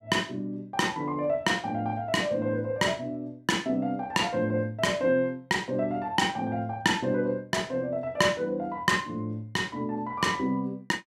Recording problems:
none

